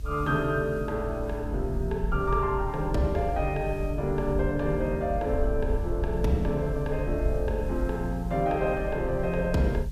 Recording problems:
hiss; SNR 28 dB
low-frequency rumble; below 72 Hz, strongest tone 48 Hz, SNR 6 dB

